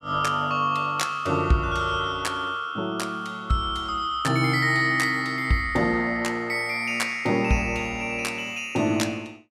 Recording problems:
none

